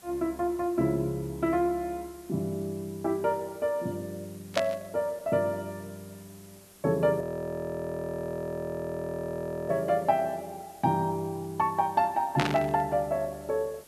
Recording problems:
background hiss; slope -2 dB per octave, SNR 23 dB
burst of static; at 4.5 s and at 12 s; peak +5 dB vs average level
audio freezing; at 7 s for 2.5 s

